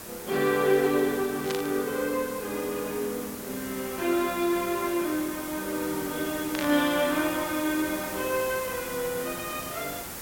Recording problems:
background hiss; slope -3 dB per octave, SNR 9 dB
static burst; at 1.5 s and at 6.5 s; peak -2 dB vs average level

